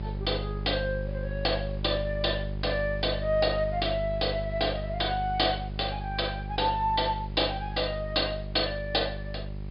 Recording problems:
treble cut off; nothing above 5.1 kHz
hum; 50 Hz, harmonics up to 600 Hz, SNR 7 dB
hiss; SNR 28 dB

